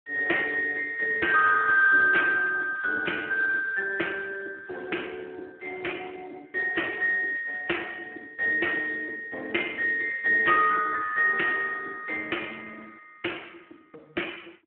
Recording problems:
telephone audio; 260 Hz to 3.1 kHz, Speex

